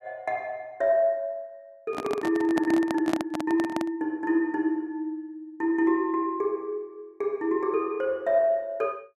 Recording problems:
microphone handling noise; from 2 to 4 s; peak +2 dB vs average level

